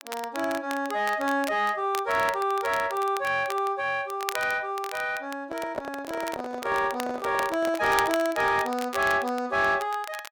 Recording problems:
distortion; soft clipping, signal-to-distortion ratio 11 dB
crackle; vinyl, SNR 13 dB
handling noise; from 5.5 to 8 s; peak 0 dB vs average level

